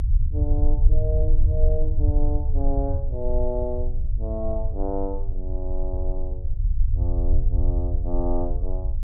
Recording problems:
low-frequency rumble; below 62 Hz, strongest tone 20 Hz, SNR -6 dB

